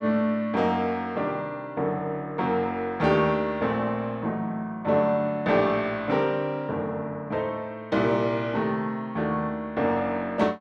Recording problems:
none

